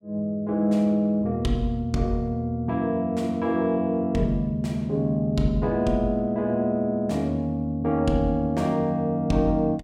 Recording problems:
none

